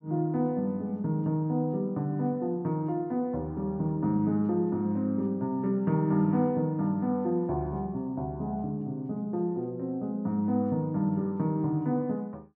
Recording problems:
none

